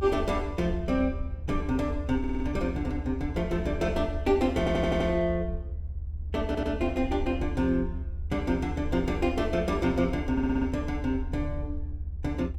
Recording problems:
rumble; below 76 Hz, SNR 7 dB
stutter; 4 times, first at 2 s

